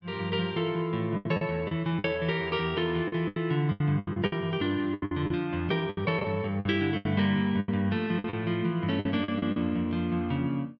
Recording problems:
packet loss; 12% of the sound replaced, filled with the last packet

